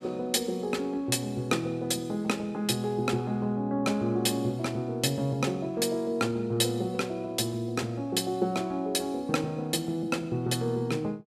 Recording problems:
none

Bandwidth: 14.5 kHz